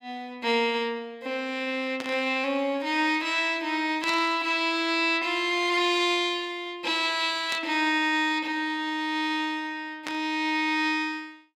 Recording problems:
static burst; 4 times, first at 2 s; peak -4 dB vs average level

